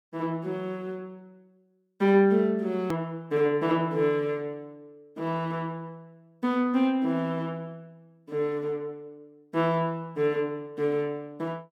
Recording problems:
click at an edit; at 3 s

